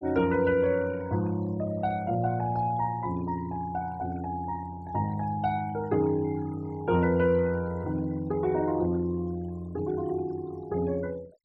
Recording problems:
noise reduction artefacts; signal-to-artefact ratio 23 dB

